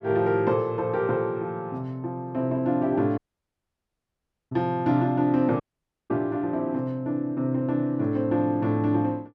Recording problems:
audio cutting out; at 3 s for 1.5 s and at 5.5 s for 0.5 s

